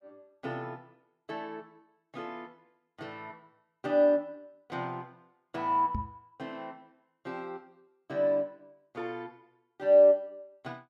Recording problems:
microphone bump; at 6 s; peak -3 dB vs average level

